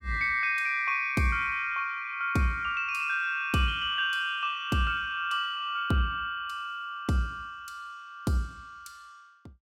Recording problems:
none

